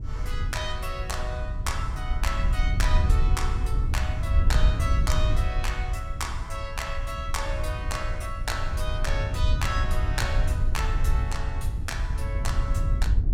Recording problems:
wind on the microphone; below 80 Hz, SNR -5 dB

